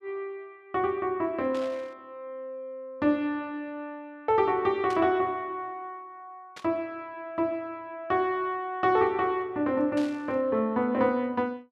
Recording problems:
static burst; 4 times, first at 1.5 s; peak -10 dB vs average level

